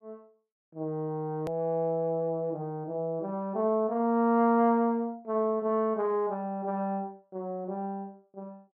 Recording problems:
edit click; at 1.5 s

